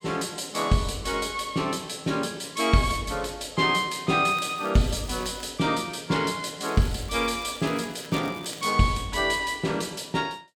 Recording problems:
crackle; from 4.5 to 5.5 s and from 6.5 to 8.5 s; loose cable, SNR 21 dB

